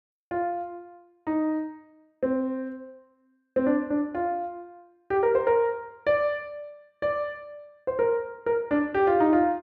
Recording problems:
none

